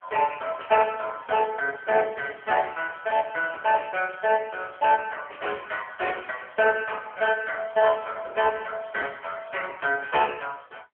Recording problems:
phone line; 390 Hz to 3.1 kHz, AMR-NB

